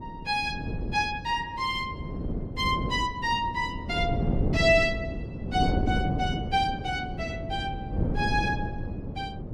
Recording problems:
wind on the microphone; below 280 Hz, SNR 4 dB

